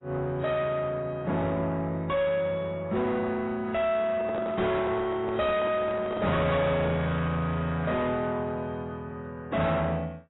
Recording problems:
lossy codec; AAC, log-spectral distance 2 dB, nothing above 3.8 kHz
distorted audio; soft clipping, signal-to-distortion ratio 7 dB
microphone handling noise; from 4 to 6.5 s; peak -2 dB vs average level

